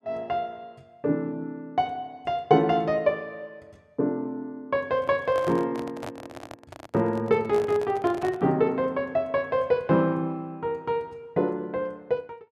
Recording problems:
microphone handling noise; from 5 to 8.5 s; peak -6 dB vs average level

